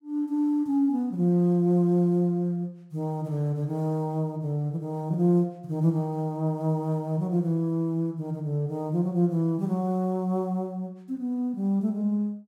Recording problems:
none

